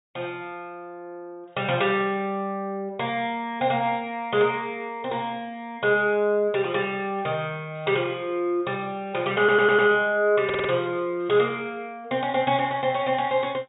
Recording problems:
low-pass filter; nothing above 4 kHz
stutter; at 9.5 s and at 10 s

